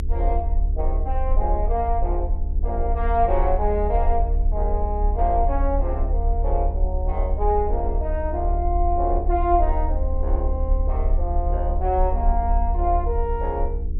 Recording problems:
electrical hum; 60 Hz, harmonics up to 480 Hz, SNR 11 dB
rumble; below 70 Hz, strongest tone 36 Hz, SNR 0 dB

